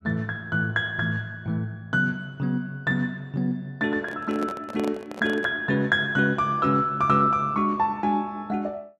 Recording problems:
handling noise; from 4 to 5.5 s; peak -6 dB vs average level

